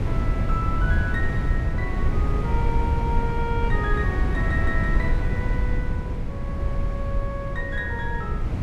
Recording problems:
wind on the microphone; below 110 Hz, SNR -5 dB

